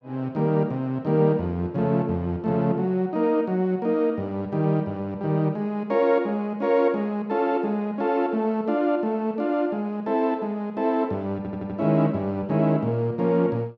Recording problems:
stutter; at 11 s

